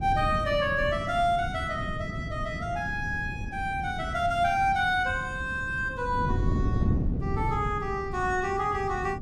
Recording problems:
wind on the microphone; below 190 Hz, SNR 6 dB

